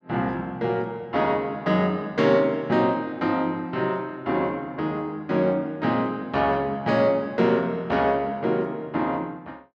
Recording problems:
none

